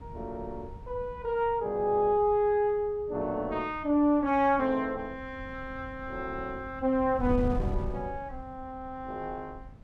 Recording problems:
wind on the microphone; below 120 Hz, SNR 13 dB

